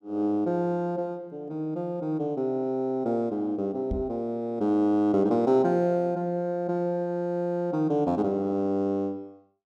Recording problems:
microphone thump; at 4 s; peak -1 dB vs average level

